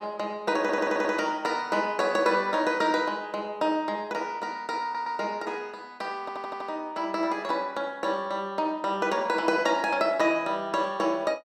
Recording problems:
audio stuttering; at 0.5 s, at 5 s and at 6 s

